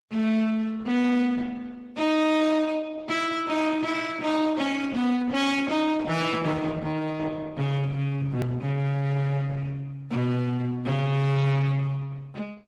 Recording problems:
lossy codec; MP3, then Opus, log-spectral distance 3 dB, nothing above 19.5 kHz
distortion; hard clipping, uneven, signal-to-distortion ratio 8 dB
click at an edit; at 8.5 s

